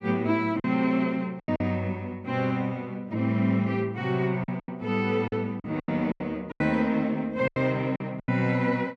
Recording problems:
packet loss; 9% of the sound replaced, filled with silence

